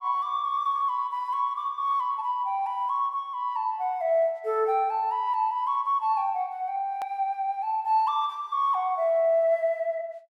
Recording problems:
edit click; at 7 s

